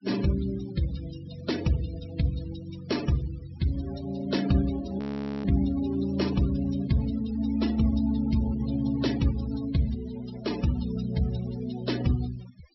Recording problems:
low-pass filter; nothing above 5.7 kHz
denoising artefacts; signal-to-artefact ratio 14 dB
audio freezing; at 5 s

